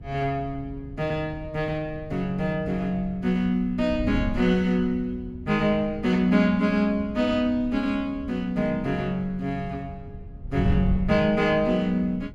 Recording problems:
wind noise; below 120 Hz, SNR 12 dB

